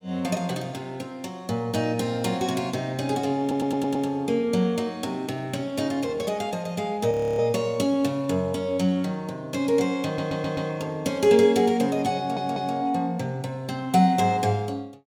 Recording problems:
audio stuttering; at 3.5 s, at 10 s and at 12 s
frozen audio; at 7 s

